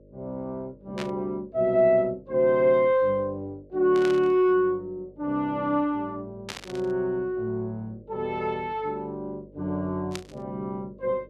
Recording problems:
electrical hum; 50 Hz, harmonics up to 600 Hz, SNR 27 dB
static burst; 4 times, first at 1 s; peak -5 dB vs average level

